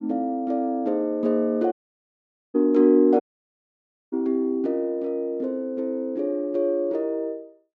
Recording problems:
audio cutting out; at 1.5 s for 1 s and at 3 s for 1 s

